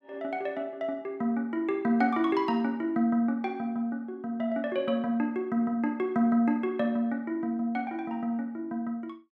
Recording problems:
none

